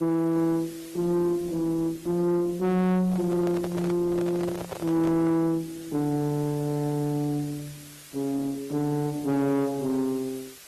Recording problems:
lossy compression; Opus, log-spectral distance 4 dB, nothing above 13.1 kHz
distorted audio; soft clipping, signal-to-distortion ratio 10 dB
hiss; slope 0 dB per octave, SNR 21 dB
microphone handling noise; from 3 to 5.5 s; peak -4 dB vs average level

